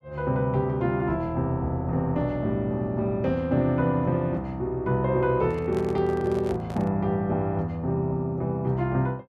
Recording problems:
handling noise; from 5.5 to 7 s; peak -8 dB vs average level

